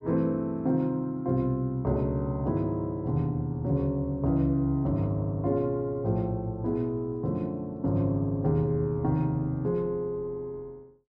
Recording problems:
none

